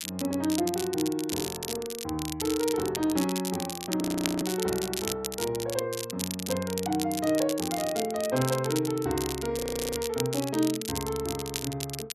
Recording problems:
crackling; vinyl, SNR 6 dB
frozen audio; at 4 s and at 9.5 s

